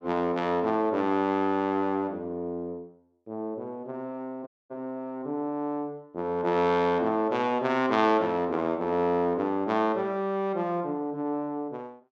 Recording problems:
dropout; at 4.5 s

